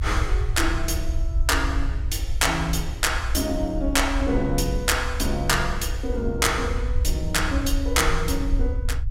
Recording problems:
rumble; below 68 Hz, SNR 4 dB

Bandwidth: 16 kHz